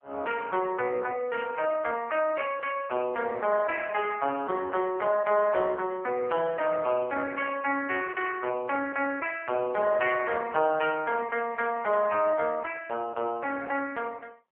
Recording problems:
telephone audio; 300 Hz to 2.8 kHz, AMR-NB

